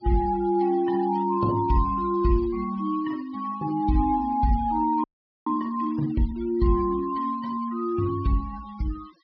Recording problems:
treble missing; nothing above 5.5 kHz
denoising artefacts; signal-to-artefact ratio 21 dB
audio freezing; at 5 s

